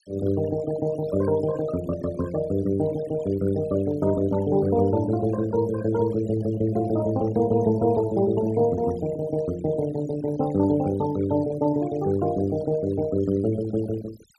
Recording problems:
denoising artefacts; signal-to-artefact ratio 18 dB

